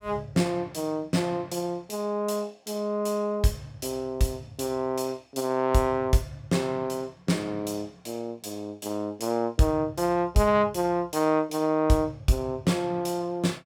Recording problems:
none

